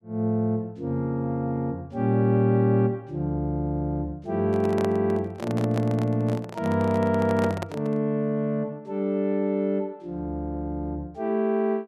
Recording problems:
handling noise; from 4.5 to 8 s; peak -3 dB vs average level

